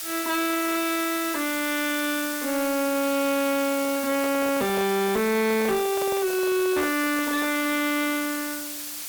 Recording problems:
distorted audio; soft clipping, signal-to-distortion ratio 11 dB
background hiss; slope +2 dB per octave, SNR 7 dB
microphone handling noise; from 3.5 to 7.5 s; peak -4 dB vs average level

